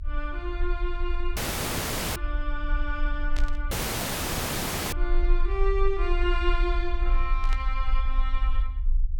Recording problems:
low-frequency rumble; below 42 Hz, strongest tone 26 Hz, SNR -3 dB
dropout; at 1.5 s for 1 s and at 3.5 s for 1 s
burst of static; at 3.5 s and at 7.5 s; peak -3 dB vs average level

